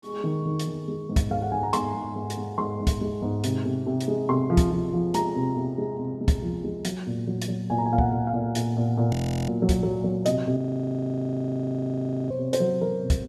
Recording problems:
frozen audio; at 9 s and at 11 s for 1.5 s

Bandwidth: 14.5 kHz